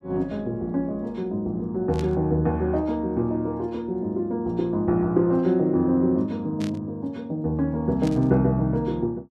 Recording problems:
static burst; at 2 s, at 6.5 s and at 8 s; peak -10 dB vs average level

